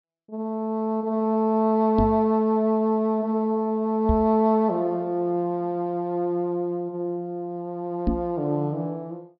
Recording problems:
treble cut off; nothing above 5.5 kHz
microphone bump; at 2 s, at 4 s and at 8 s; peak +4 dB vs average level

